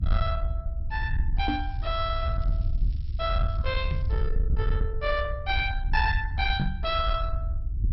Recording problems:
codec artefacts; MP2, log-spectral distance 2 dB, nothing above 5.3 kHz
distorted audio; soft clipping, signal-to-distortion ratio 12 dB
rumble; below 74 Hz, SNR 0 dB
crackle; from 1.5 to 4 s; loose cable, SNR 27 dB
microphone thump; at 1.5 s, at 4 s and at 6.5 s; peak +6 dB vs average level

